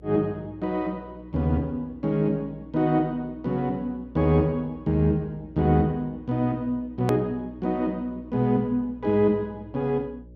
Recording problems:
hum; 60 Hz, harmonics up to 600 Hz, SNR 22 dB
edit click; at 7 s

